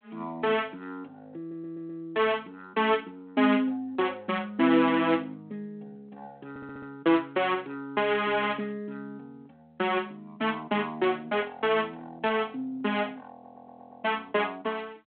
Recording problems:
telephone audio; 220 Hz to 3.5 kHz, G.726
audio stuttering; at 1.5 s, at 6.5 s and at 13 s
static burst; at 8.5 s; peak -5 dB vs average level

